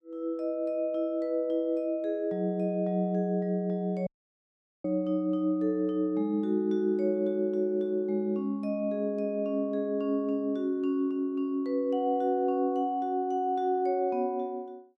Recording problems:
audio cutting out; at 4 s for 1 s

